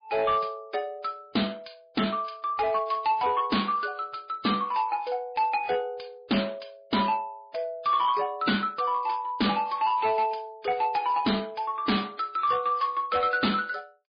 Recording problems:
codec artefacts; MP3, log-spectral distance 5 dB, nothing above 4.5 kHz
distortion; hard clipping, signal-to-distortion ratio 12 dB

